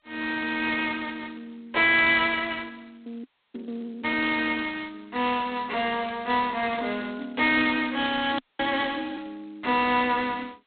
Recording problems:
phone line; 240 Hz to 4 kHz, G.726
audio freezing; at 3 s and at 8.5 s

